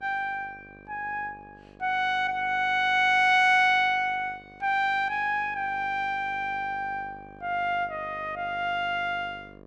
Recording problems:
hum; 50 Hz, harmonics up to 1.8 kHz, SNR 24 dB

